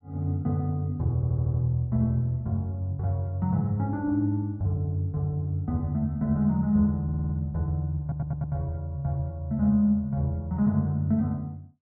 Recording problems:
stutter; at 1 s, at 7 s and at 8 s

